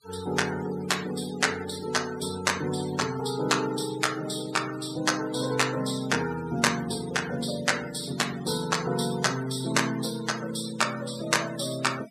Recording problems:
denoising artefacts; signal-to-artefact ratio 14 dB

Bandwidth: 14.5 kHz